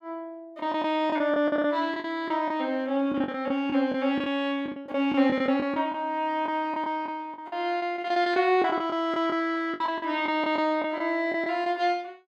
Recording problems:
packet loss; 12% of the sound replaced, filled with the last packet

